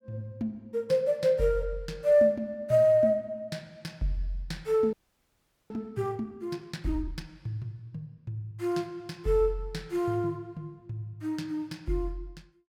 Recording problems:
audio freezing; at 5 s for 1 s

